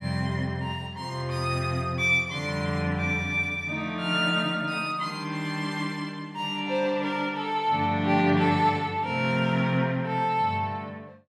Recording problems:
none

